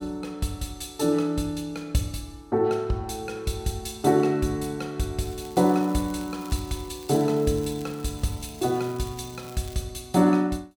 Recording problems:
crackling; from 5.5 to 10 s; loose cable, SNR 21 dB

